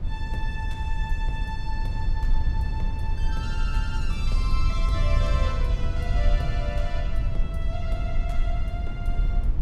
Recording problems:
rumble; below 68 Hz, SNR -8 dB

